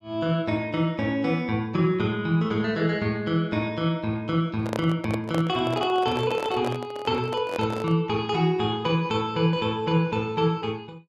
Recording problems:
handling noise; from 4.5 to 8 s; peak -1 dB vs average level

